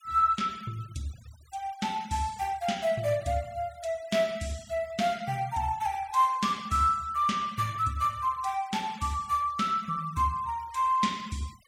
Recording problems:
denoising artefacts; signal-to-artefact ratio 22 dB

